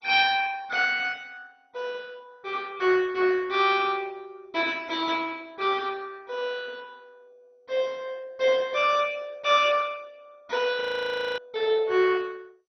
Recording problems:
lossy compression; MP2, log-spectral distance 4 dB, nothing above 5.5 kHz
audio freezing; at 11 s for 0.5 s

